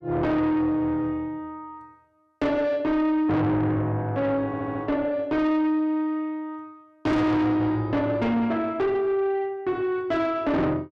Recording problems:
distortion; soft clipping, signal-to-distortion ratio 7 dB
audio stuttering; at 4.5 s

